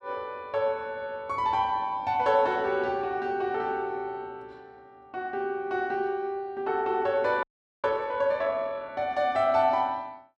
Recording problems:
audio freezing; at 7.5 s

